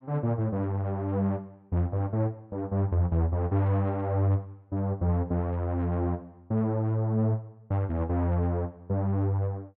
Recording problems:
none

